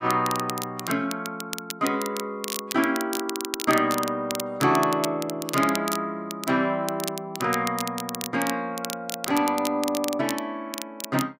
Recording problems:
crackle; vinyl, SNR 8 dB

